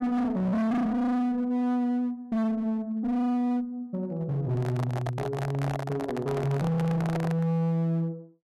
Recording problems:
distorted audio; hard clipping, uneven, signal-to-distortion ratio 6 dB
handling noise; from 4.5 to 7.5 s; peak -2 dB vs average level

